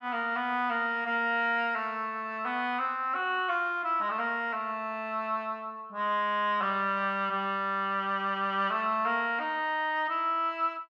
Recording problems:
none

